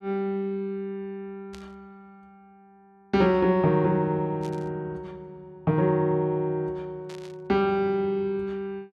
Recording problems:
burst of static; at 1.5 s, at 4.5 s and at 7 s; peak -15 dB vs average level

